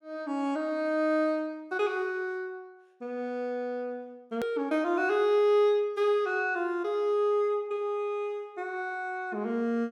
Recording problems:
click at an edit; at 4.5 s

